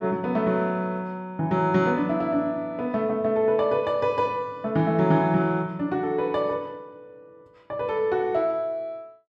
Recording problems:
none

